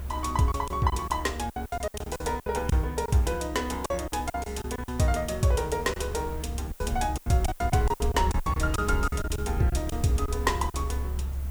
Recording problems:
hiss; slope -2 dB per octave, SNR 22 dB
low-frequency rumble; below 72 Hz, strongest tone 68 Hz, SNR 6 dB
wind noise; below 820 Hz, SNR 19 dB
lost packets; 13% of the sound replaced, filled with silence

